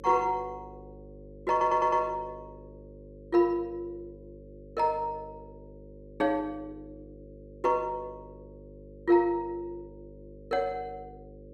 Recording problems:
electrical hum; 50 Hz, harmonics up to 550 Hz, SNR 19 dB
stutter; at 1.5 s

